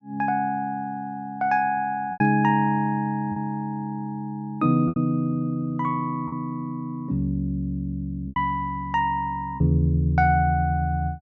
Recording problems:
packet loss; 3% of the sound replaced, filled with repeated pitch periods

